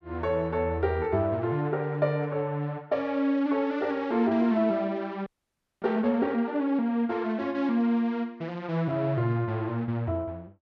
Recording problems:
frozen audio; at 5.5 s for 0.5 s

